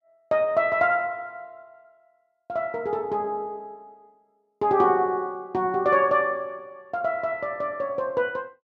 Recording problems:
none

